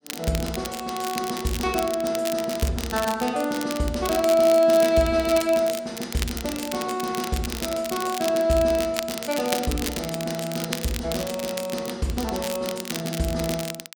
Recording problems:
crackling; vinyl, SNR 9 dB

